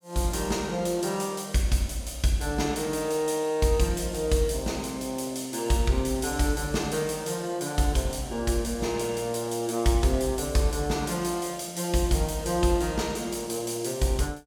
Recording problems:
none

